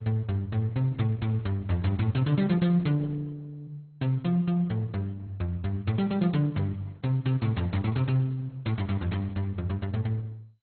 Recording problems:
lossy compression; Opus, then MP2, log-spectral distance 2 dB, nothing above 4.2 kHz

